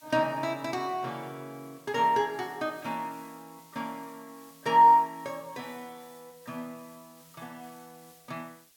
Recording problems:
hiss; SNR 27 dB

